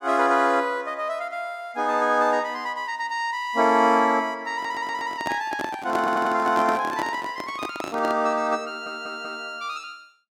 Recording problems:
stutter; at 4.5 s, at 6 s and at 8.5 s
handling noise; from 4.5 to 8 s; peak -2 dB vs average level

